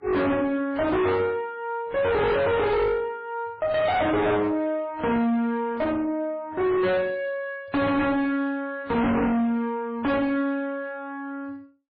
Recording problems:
lossy compression; AAC, then MP3, log-spectral distance 2 dB, nothing above 4.1 kHz
distorted audio; soft clipping, signal-to-distortion ratio 5 dB

